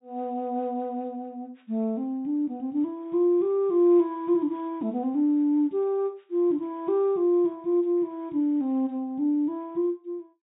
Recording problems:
treble missing; nothing above 4 kHz

